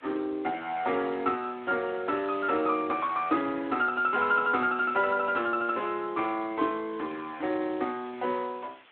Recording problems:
telephone audio; 220 Hz to 3.8 kHz, Speex
hiss; SNR 27 dB

